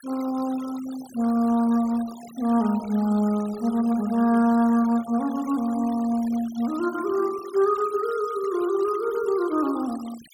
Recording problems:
denoising artefacts; signal-to-artefact ratio 20 dB

